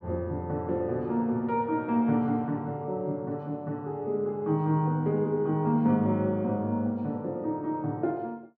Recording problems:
none

